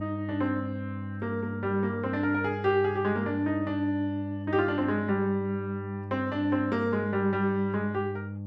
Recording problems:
hum; 50 Hz, harmonics up to 600 Hz, SNR 8 dB

